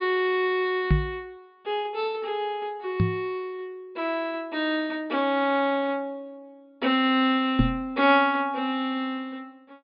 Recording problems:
low-pass filter; nothing above 5 kHz
microphone bump; at 1 s, at 3 s and at 7.5 s; peak +7 dB vs average level

